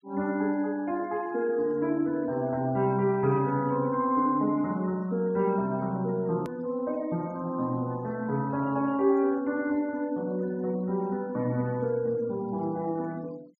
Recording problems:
treble cut off; nothing above 6.9 kHz
denoising artefacts; signal-to-artefact ratio 27 dB
hard cut with a click; at 6.5 s

